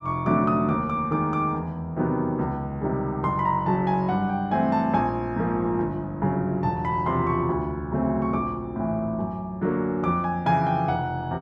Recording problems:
none

